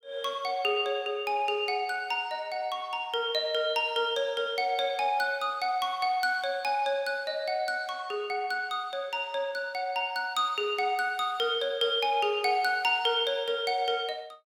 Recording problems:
none

